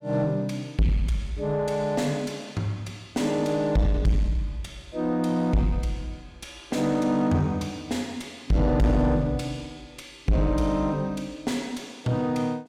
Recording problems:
distorted audio; soft clipping, signal-to-distortion ratio 8 dB

